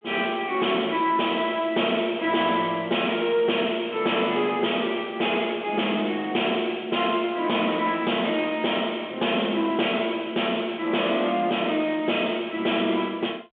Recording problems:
telephone audio; 190 Hz to 3.5 kHz, G.726
distorted audio; soft clipping, signal-to-distortion ratio 10 dB

